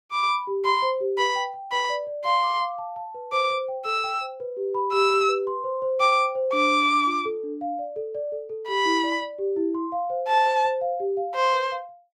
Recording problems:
none

